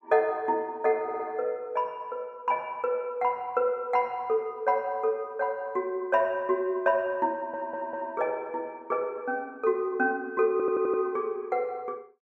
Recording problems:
stutter; at 1 s, at 7.5 s and at 11 s

